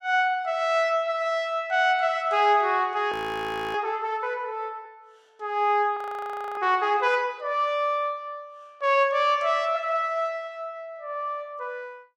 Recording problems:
frozen audio; at 3 s for 0.5 s and at 6 s for 0.5 s

